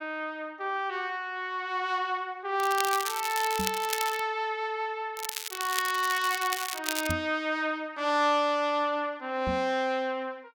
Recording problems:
crackle; from 2.5 to 4 s and from 5 to 7 s; loose cable, SNR 5 dB
microphone bump; at 3.5 s, at 7 s and at 9.5 s; peak 0 dB vs average level

